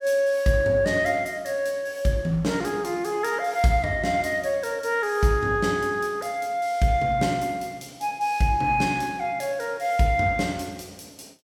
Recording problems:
none

